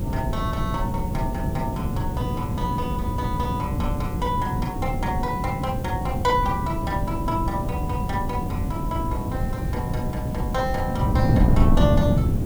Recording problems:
hum; 60 Hz, harmonics up to 540 Hz, SNR 7 dB
background hiss; slope -3 dB per octave, SNR 17 dB
wind on the microphone; below 190 Hz, SNR -3 dB

